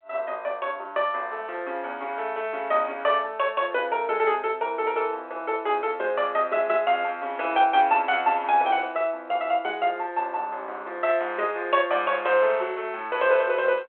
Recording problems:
phone line; 300 Hz to 3.3 kHz, G.726

